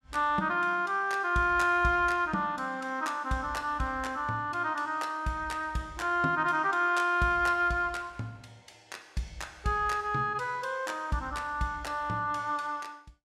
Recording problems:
none

